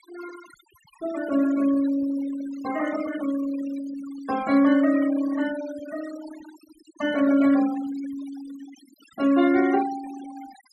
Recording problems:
noise reduction artefacts; signal-to-artefact ratio 15 dB

